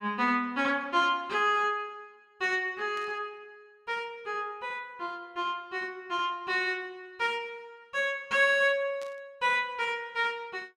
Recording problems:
burst of static; at 3 s and at 9 s; peak -14 dB vs average level

